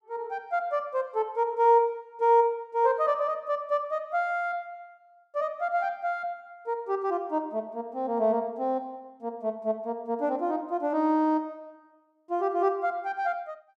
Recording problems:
none

